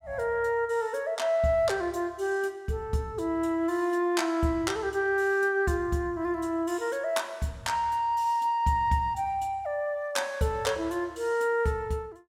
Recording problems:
none

